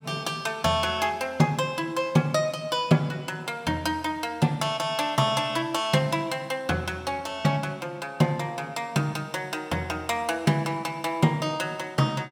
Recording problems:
none

